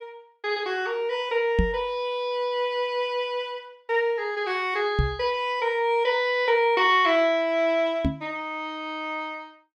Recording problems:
microphone bump; at 1.5 s, at 5 s and at 8 s; peak +5 dB vs average level

